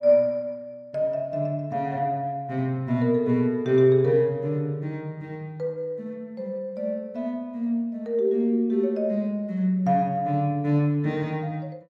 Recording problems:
none

